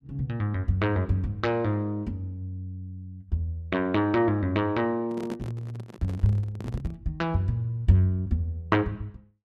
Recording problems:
microphone handling noise; from 5 to 7 s; peak -5 dB vs average level

